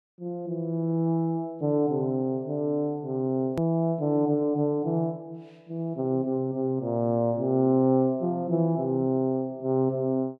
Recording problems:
click at an edit; at 3.5 s

